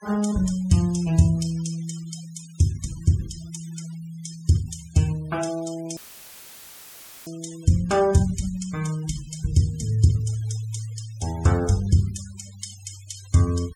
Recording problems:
noise reduction artefacts; signal-to-artefact ratio 20 dB
audio cutting out; at 6 s for 1.5 s; filled with static

